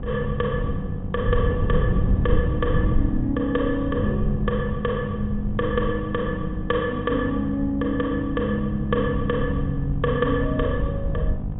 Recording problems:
low-pass filter; nothing above 4 kHz
electrical hum; 50 Hz, harmonics up to 1 kHz, SNR 9 dB
wind noise; below 120 Hz, SNR 4 dB

